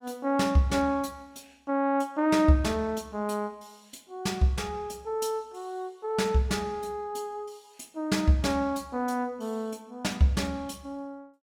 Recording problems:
none

